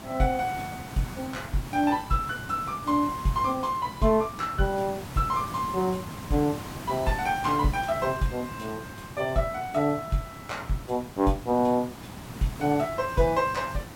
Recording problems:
background hiss; slope -5 dB per octave, SNR 12 dB

